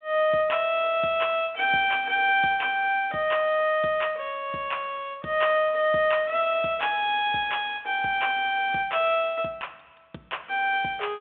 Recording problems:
telephone audio; 220 Hz to 3.7 kHz, G.726

